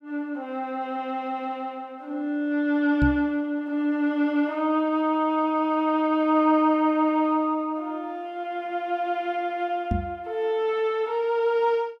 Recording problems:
knock on the microphone; at 3 s and at 10 s; peak +3 dB vs average level

